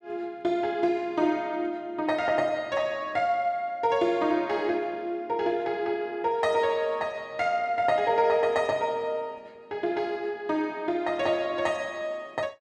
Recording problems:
none

